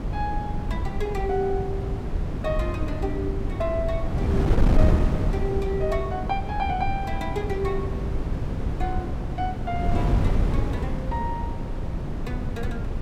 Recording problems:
wind noise; below 170 Hz, SNR -3 dB

